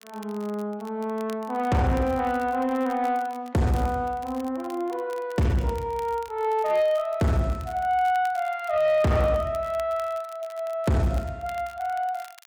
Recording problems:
distortion; soft clipping, signal-to-distortion ratio 10 dB
crackle; vinyl, SNR 24 dB

